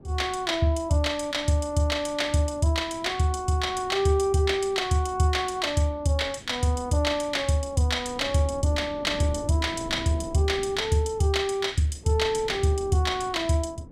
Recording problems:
wind on the microphone; below 330 Hz, SNR 19 dB

